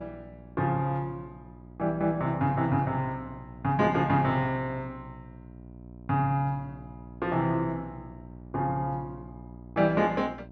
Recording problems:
electrical hum; 60 Hz, harmonics up to 960 Hz, SNR 18 dB

